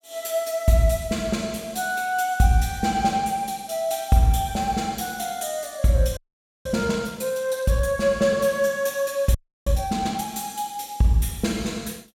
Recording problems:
frozen audio; at 6 s and at 9.5 s

